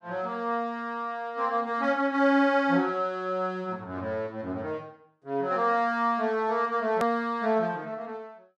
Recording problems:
hard cut with a click; at 7 s

